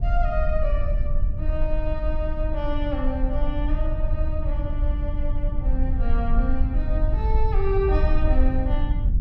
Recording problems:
rumble; below 56 Hz, SNR -5 dB

